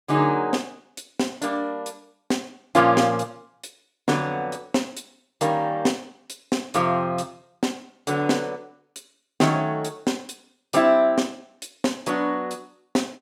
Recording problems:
none

